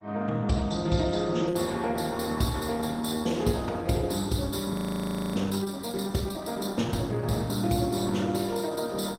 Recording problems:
lossy codec; Opus, log-spectral distance 5 dB, nothing above 16 kHz
audio freezing; at 4.5 s for 0.5 s

